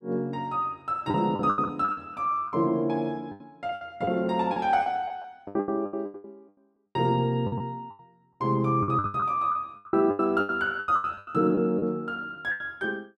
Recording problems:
lost packets; 18% of the sound replaced, filled with the last packet

